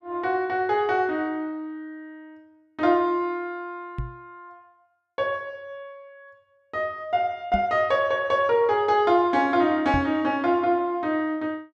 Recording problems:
knock on the microphone; at 4 s, at 7.5 s and at 10 s; peak -2 dB vs average level

